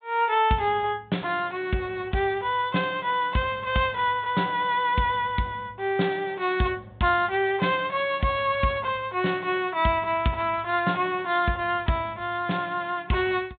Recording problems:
low-pass filter; nothing above 4 kHz

